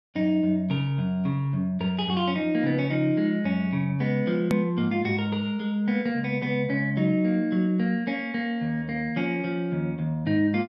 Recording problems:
click at an edit; at 4.5 s

